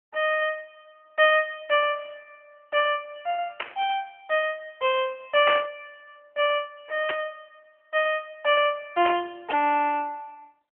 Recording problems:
telephone audio; 300 Hz to 3.2 kHz, AMR-NB
burst of static; 4 times, first at 3.5 s; peak +1 dB vs average level

